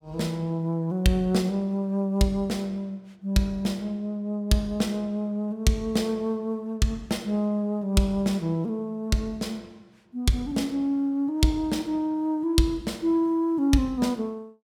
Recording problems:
none

